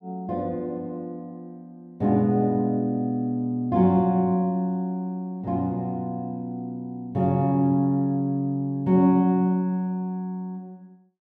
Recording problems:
none

